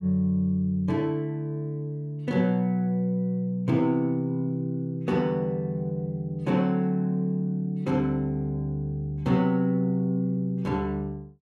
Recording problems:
none

